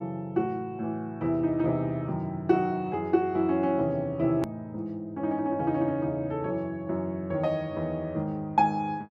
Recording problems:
hard cut with a click; at 4.5 s

